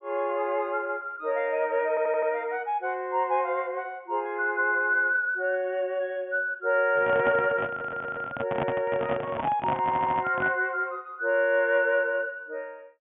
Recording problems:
treble cut off; nothing above 3.4 kHz
audio stuttering; at 2 s, at 7.5 s and at 10 s
microphone handling noise; from 7 to 11 s; peak 0 dB vs average level

